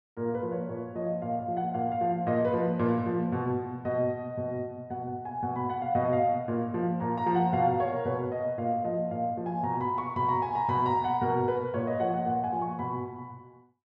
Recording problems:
none

